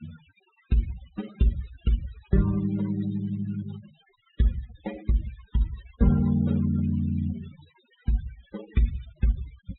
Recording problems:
treble cut off; nothing above 3.8 kHz
denoising artefacts; signal-to-artefact ratio 18 dB

